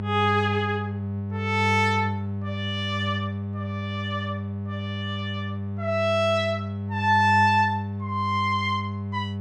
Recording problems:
electrical hum; 50 Hz, harmonics up to 600 Hz, SNR 5 dB

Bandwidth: 14.5 kHz